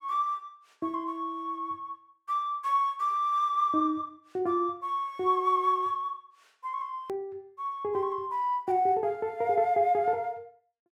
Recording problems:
click at an edit; at 7 s

